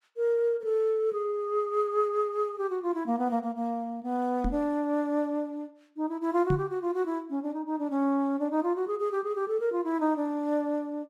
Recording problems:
microphone thump; at 4.5 s and at 6.5 s; peak +4 dB vs average level

